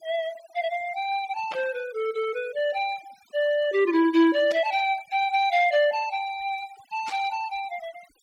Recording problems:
denoising artefacts; signal-to-artefact ratio 21 dB
burst of static; at 1.5 s, at 4.5 s and at 7 s; peak -9 dB vs average level

